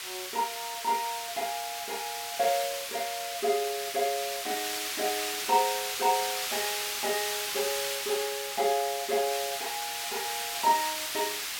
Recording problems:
background hiss; SNR 1 dB

